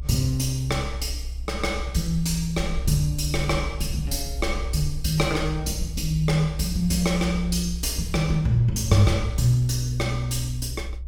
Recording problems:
rumble; below 64 Hz, strongest tone 62 Hz, SNR 8 dB

